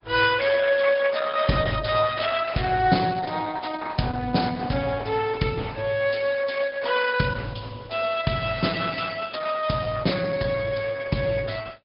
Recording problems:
treble missing; nothing above 5.2 kHz
lossy compression; Opus, log-spectral distance 6 dB

